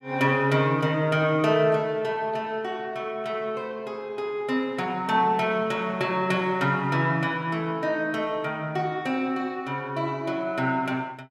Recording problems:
none

